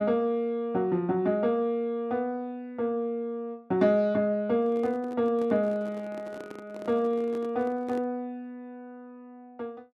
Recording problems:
handling noise; from 4.5 to 8 s; peak -10 dB vs average level

